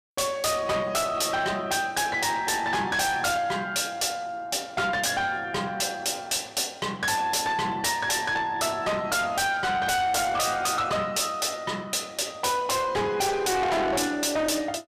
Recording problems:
distorted audio; soft clipping, signal-to-distortion ratio 6 dB

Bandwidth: 15 kHz